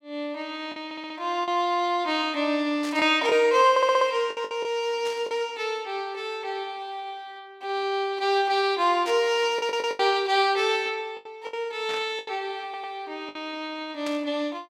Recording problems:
lost packets; 5% of the sound replaced, filled with the last packet
stutter; 4 times, first at 1 s
burst of static; 5 times, first at 3 s; peak -8 dB vs average level

